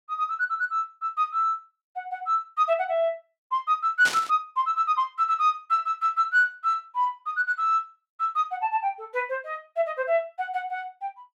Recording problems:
static burst; at 4 s; peak 0 dB vs average level

